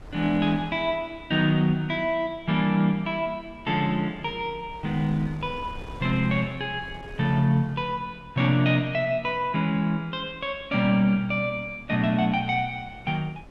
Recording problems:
wind on the microphone; below 360 Hz, SNR 21 dB

